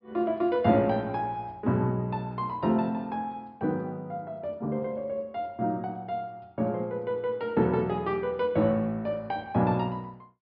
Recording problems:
low-pass filter; nothing above 5.5 kHz

